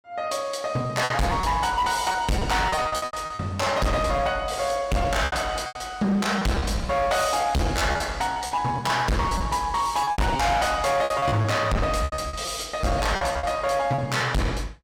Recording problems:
distortion; hard clipping, signal-to-distortion ratio 6 dB
packet loss; 12% of the sound replaced, filled with repeated pitch periods

